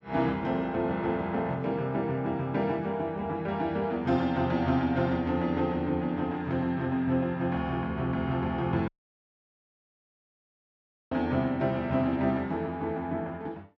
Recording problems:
dropout; at 9 s for 2 s

